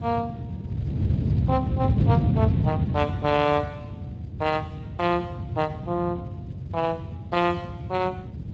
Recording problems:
codec artefacts; G.722, then Speex, log-spectral distance 2 dB, nothing above 7.8 kHz
wind on the microphone; below 190 Hz, SNR 0 dB

